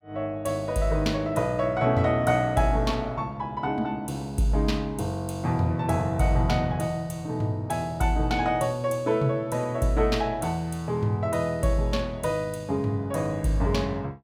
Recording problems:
none

